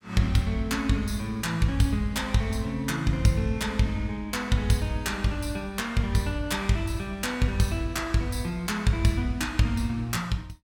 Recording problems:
none

